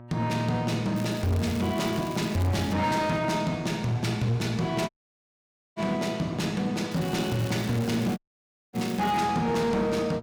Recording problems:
distortion; hard clipping, signal-to-distortion ratio 10 dB
hum; 60 Hz, harmonics up to 1.3 kHz, SNR 18 dB
crackling; from 1 to 2.5 s and from 7 to 9 s; loose cable, SNR 17 dB
audio cutting out; at 5 s for 1 s and at 8 s for 0.5 s

